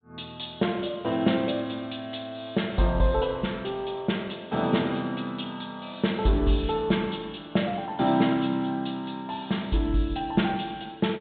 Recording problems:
treble missing; nothing above 4 kHz

